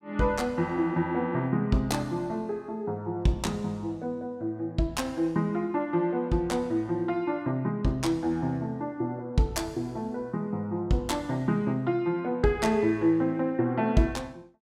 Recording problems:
none

